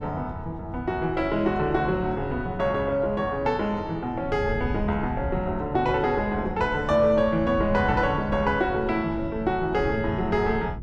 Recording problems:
wind on the microphone; below 150 Hz, SNR 11 dB

